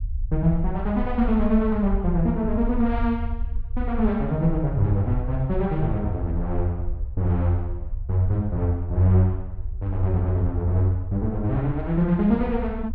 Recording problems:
rumble; below 64 Hz, SNR 8 dB

